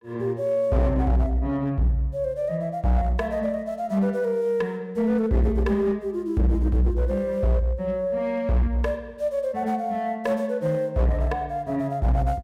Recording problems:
distorted audio; hard clipping, uneven, signal-to-distortion ratio 10 dB

